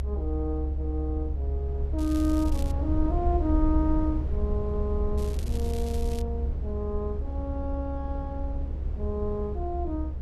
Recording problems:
low-frequency rumble; below 70 Hz, strongest tone 68 Hz, SNR -2 dB
crackle; at 2 s and from 5 to 6 s; loose cable, SNR 14 dB

